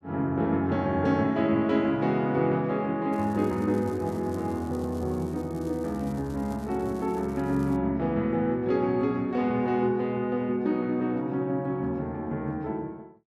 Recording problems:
crackle; from 3 to 8 s; loose cable, SNR 27 dB

